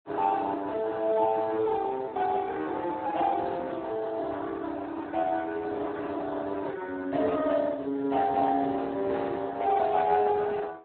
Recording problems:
phone line; 240 Hz to 3.5 kHz, Speex

